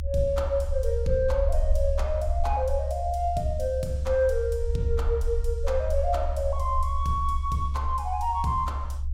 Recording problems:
low-frequency rumble; below 70 Hz, SNR 2 dB

